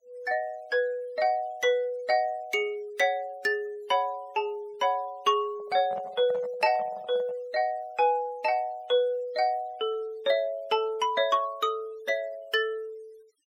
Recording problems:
noise reduction artefacts; signal-to-artefact ratio 26 dB
handling noise; from 5.5 to 7.5 s; peak -10 dB vs average level

